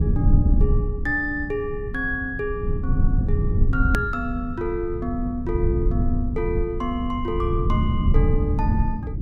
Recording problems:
low-frequency rumble; below 120 Hz, SNR -2 dB
click at an edit; at 4 s

